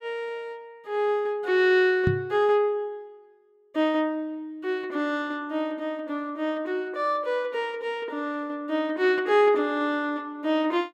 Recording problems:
microphone thump; at 2 s; peak +5 dB vs average level

